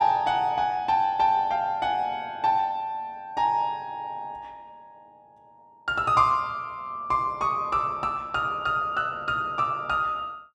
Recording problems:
none

